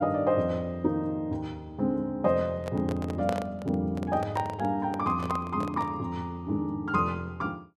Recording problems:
microphone handling noise; from 2.5 to 6 s; peak 0 dB vs average level

